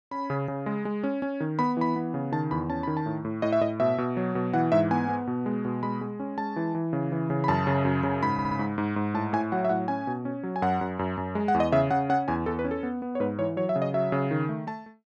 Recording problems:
stutter; at 8.5 s

